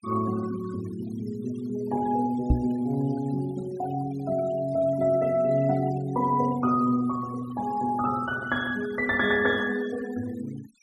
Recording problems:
denoising artefacts; signal-to-artefact ratio 21 dB
microphone thump; at 2.5 s; peak +8 dB vs average level

